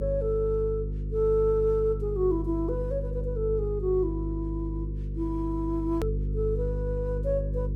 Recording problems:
hum; 50 Hz, harmonics up to 450 Hz, SNR 4 dB
edit click; at 6 s

